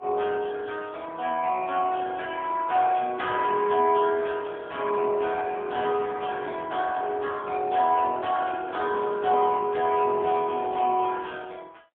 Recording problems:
phone line; 280 Hz to 3.5 kHz, AMR-NB, then MP3

